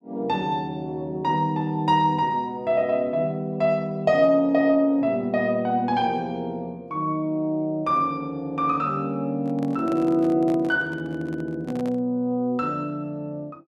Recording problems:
handling noise; from 9.5 to 12 s; peak -10 dB vs average level

